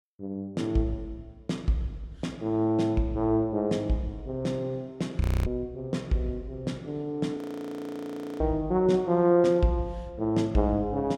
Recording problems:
frozen audio; at 5 s and at 7.5 s for 1 s

